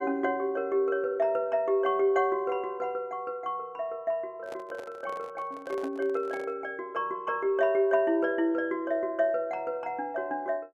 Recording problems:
microphone handling noise; from 4.5 to 6.5 s; peak -8 dB vs average level

